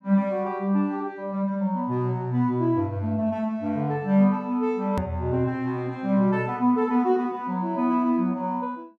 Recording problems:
hard cut with a click; at 5 s

